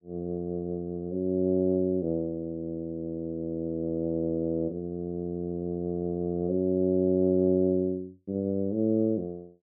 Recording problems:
none

